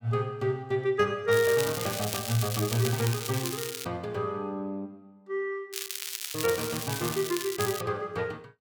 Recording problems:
crackling; from 1.5 to 4 s and from 5.5 to 8 s; loose cable, SNR 5 dB

